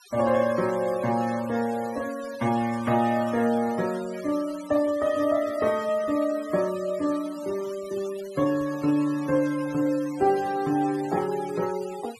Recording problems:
denoising artefacts; signal-to-artefact ratio 18 dB

